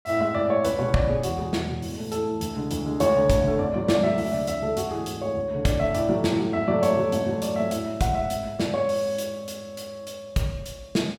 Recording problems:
none

